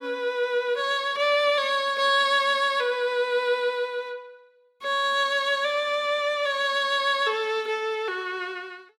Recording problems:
none

